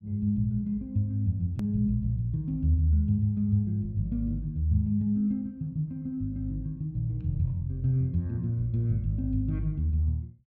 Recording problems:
edit click; at 1.5 s

